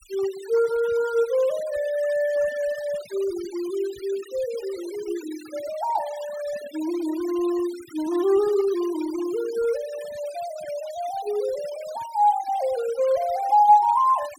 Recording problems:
noise reduction artefacts; signal-to-artefact ratio 19 dB

